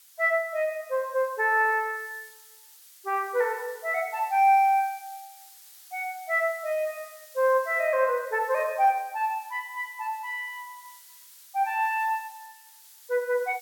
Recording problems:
hiss; slope +5 dB per octave, SNR 22 dB

